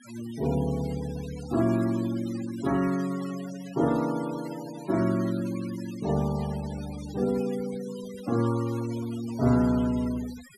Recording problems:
denoising artefacts; signal-to-artefact ratio 17 dB

